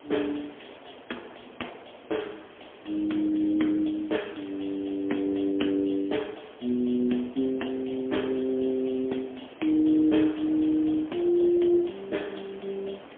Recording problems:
phone line; 220 Hz to 3.4 kHz, AMR-NB, then MP3
hiss; SNR 27 dB
wind on the microphone; below 910 Hz, SNR 23 dB

